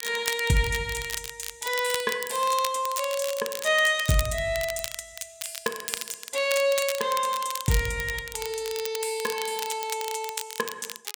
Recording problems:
crackling; vinyl, SNR 8 dB

